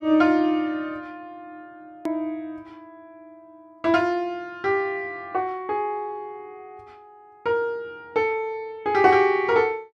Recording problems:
hard cut with a click; at 2 s

